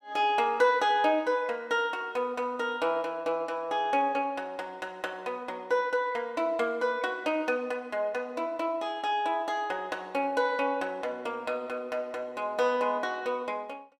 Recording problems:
none

